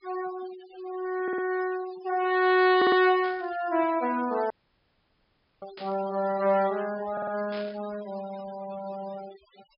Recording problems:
treble missing; nothing above 5.5 kHz
denoising artefacts; signal-to-artefact ratio 19 dB
stutter; at 1 s, at 3 s and at 7 s
static burst; at 3 s, at 6 s and at 7.5 s; peak -12 dB vs average level
audio cutting out; at 4.5 s for 1 s

